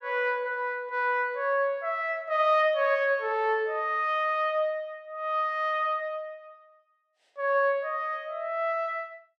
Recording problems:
none

